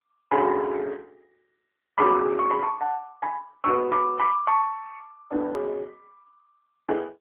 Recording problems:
phone line; 260 Hz to 3.3 kHz, AMR-NB
click at an edit; at 5.5 s

